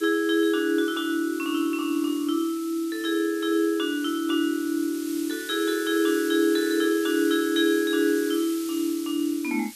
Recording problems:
background hiss; SNR 15 dB

